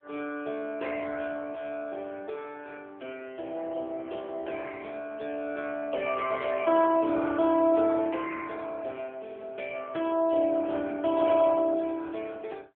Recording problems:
phone line; 280 Hz to 3.5 kHz, AMR-NB

